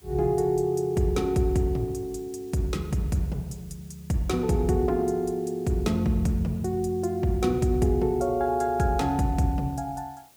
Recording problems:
hiss; slope -1 dB per octave, SNR 28 dB

